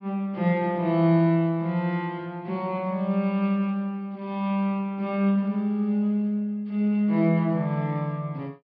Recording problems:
low-pass filter; nothing above 5.5 kHz

